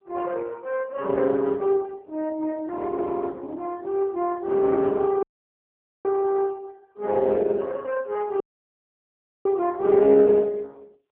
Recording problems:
telephone audio; 220 Hz to 2.8 kHz, AMR-NB
audio cutting out; at 5 s for 1 s and at 8.5 s for 1 s

